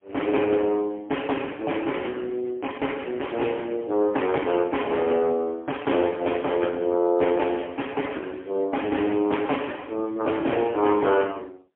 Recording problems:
telephone audio; 240 Hz to 3.2 kHz, AMR-NB, then MP3

